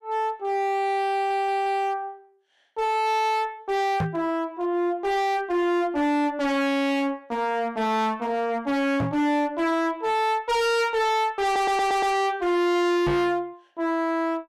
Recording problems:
distorted audio; hard clipping, signal-to-distortion ratio 7 dB
stutter; at 1 s and at 11 s
knock on the microphone; at 4 s, at 9 s and at 13 s; peak +2 dB vs average level

